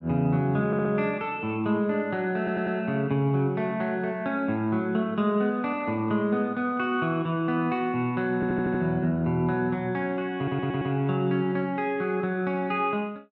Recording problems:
audio stuttering; 4 times, first at 0.5 s

